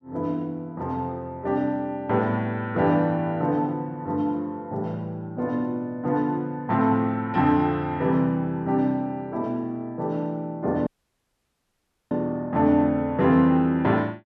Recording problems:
audio cutting out; at 11 s for 1 s

